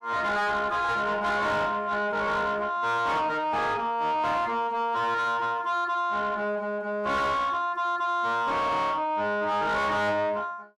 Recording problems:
distortion; soft clipping, signal-to-distortion ratio 7 dB

